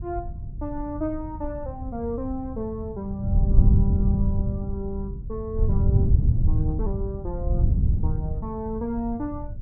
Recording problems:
wind noise; below 110 Hz, SNR -7 dB

